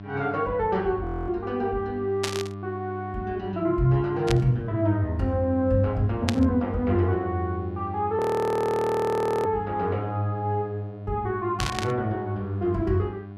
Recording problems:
electrical hum; 50 Hz, harmonics up to 1 kHz, SNR 12 dB
audio freezing; at 1 s and at 8 s for 1.5 s
burst of static; 4 times, first at 2 s; peak +3 dB vs average level

